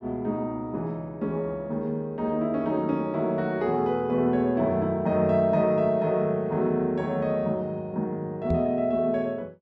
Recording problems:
microphone thump; at 8.5 s; peak +1 dB vs average level

